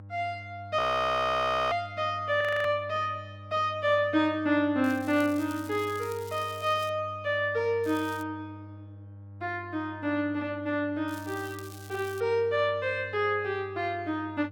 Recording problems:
electrical hum; 50 Hz, harmonics up to 600 Hz, SNR 17 dB
audio freezing; at 1 s for 1 s and at 2.5 s
crackle; from 5 to 7 s, at 8 s and from 11 to 12 s; loose cable, SNR 20 dB

